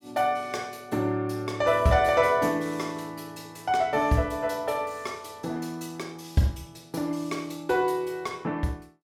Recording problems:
none

